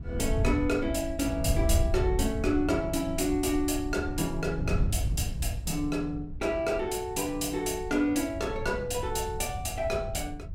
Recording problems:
wind noise; below 98 Hz, SNR 5 dB

